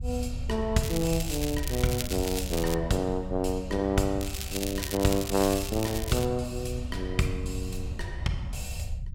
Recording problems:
low-frequency rumble; below 84 Hz, SNR 8 dB
crackle; from 1 to 2.5 s and from 4 to 6.5 s; loose cable, SNR 7 dB

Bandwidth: 16 kHz